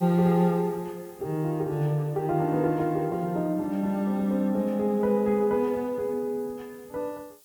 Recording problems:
background hiss; SNR 27 dB

